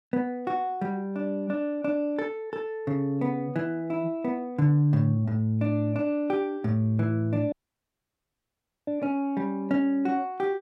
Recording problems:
dropout; at 7.5 s for 1.5 s

